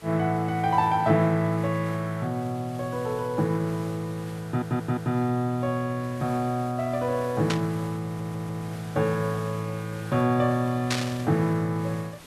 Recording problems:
background hiss; slope -3 dB per octave, SNR 20 dB
stutter; at 4.5 s and at 8 s
burst of static; at 7.5 s and at 11 s; peak +3 dB vs average level

